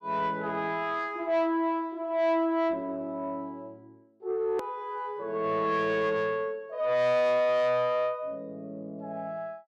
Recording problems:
distorted audio; soft clipping, signal-to-distortion ratio 11 dB
edit click; at 4.5 s

